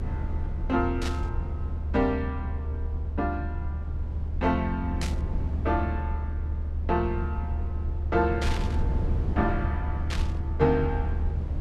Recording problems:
low-frequency rumble; below 78 Hz, strongest tone 74 Hz, SNR 1 dB
burst of static; 4 times, first at 1 s; peak -1 dB vs average level

